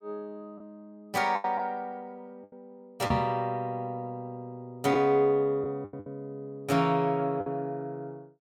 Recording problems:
packet loss; 5% of the sound replaced, filled with the last packet
microphone bump; at 3 s; peak +4 dB vs average level

